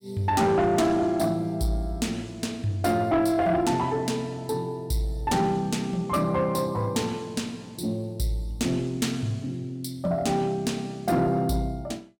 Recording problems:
distortion; soft clipping, signal-to-distortion ratio 11 dB

